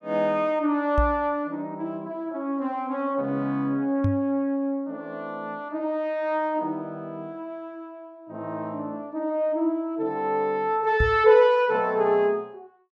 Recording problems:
knock on the microphone; at 1 s, at 4 s and at 11 s; peak +4 dB vs average level

